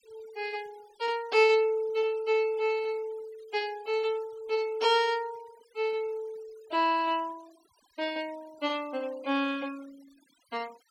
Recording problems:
noise reduction artefacts; signal-to-artefact ratio 25 dB

